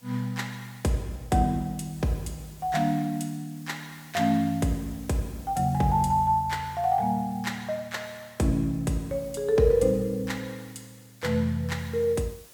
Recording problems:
background hiss; slope -2 dB per octave, SNR 24 dB

